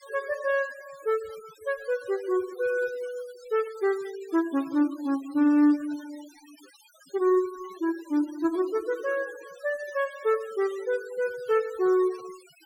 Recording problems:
denoising artefacts; signal-to-artefact ratio 21 dB

